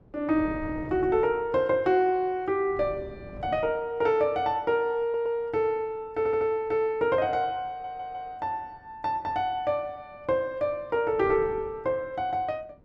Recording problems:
wind noise; below 370 Hz, SNR 17 dB
audio stuttering; at 5 s, at 6 s and at 7.5 s

